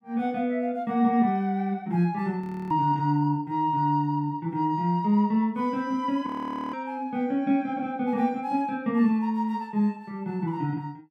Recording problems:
frozen audio; at 2.5 s and at 6.5 s

